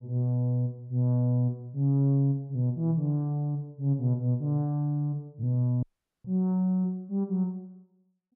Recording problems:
audio cutting out; at 6 s

